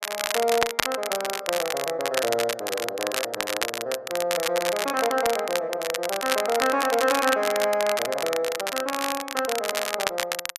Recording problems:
crackle; vinyl, SNR 3 dB

